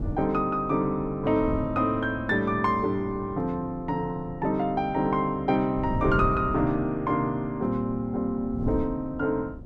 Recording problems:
wind noise; below 170 Hz, SNR 12 dB

